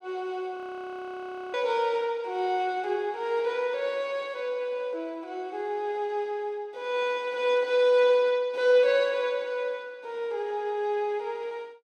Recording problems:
frozen audio; at 0.5 s for 1 s

